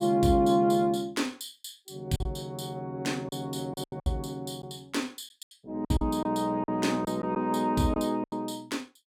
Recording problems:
lost packets; 8% of the sound replaced, filled with silence

